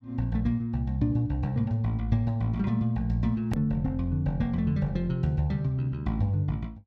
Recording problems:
hard cut with a click; at 3.5 s

